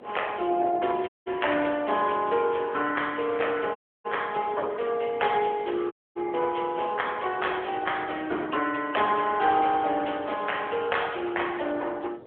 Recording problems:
telephone audio; 320 Hz to 3.4 kHz, AMR-NB
wind noise; below 580 Hz, SNR 19 dB
audio cutting out; at 1 s, at 4 s and at 6 s

